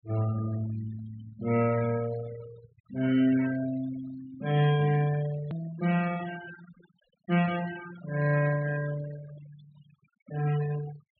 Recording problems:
low-pass filter; nothing above 4.2 kHz
denoising artefacts; signal-to-artefact ratio 15 dB
edit click; at 5.5 s

